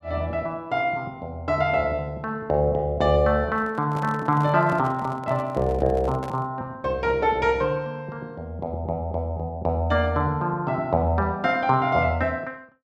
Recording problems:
microphone handling noise; from 3.5 to 6.5 s; peak -8 dB vs average level

